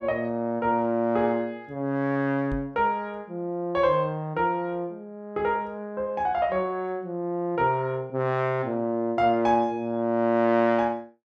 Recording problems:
microphone bump; at 2.5 s; peak -4 dB vs average level

